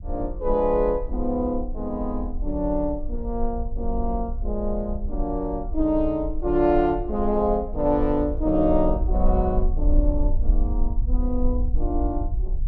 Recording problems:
rumble; below 50 Hz, SNR 4 dB

